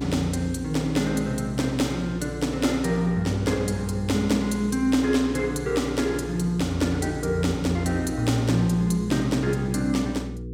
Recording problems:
electrical hum; 60 Hz, harmonics up to 480 Hz, SNR 11 dB

